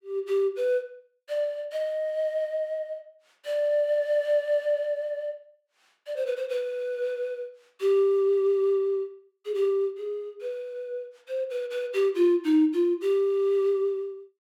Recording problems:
none

